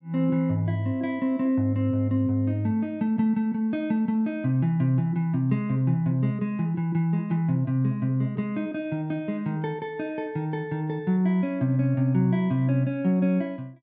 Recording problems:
none

